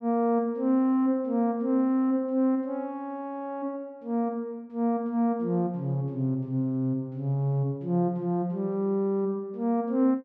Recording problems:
none

